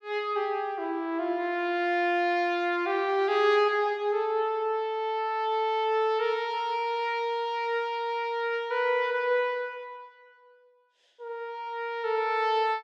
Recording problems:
none

